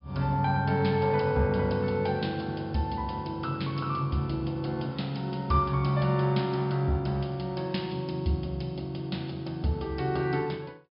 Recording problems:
treble cut off; nothing above 5.5 kHz

